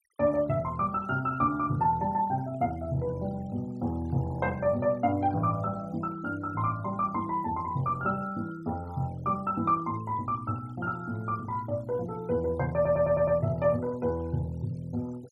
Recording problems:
denoising artefacts; signal-to-artefact ratio 26 dB
stutter; at 13 s

